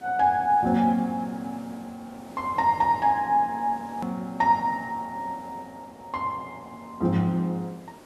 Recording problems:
background hiss; slope -7 dB per octave, SNR 22 dB
hard cut with a click; at 4 s

